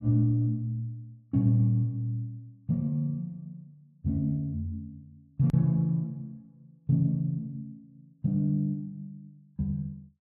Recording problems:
click at an edit; at 5.5 s

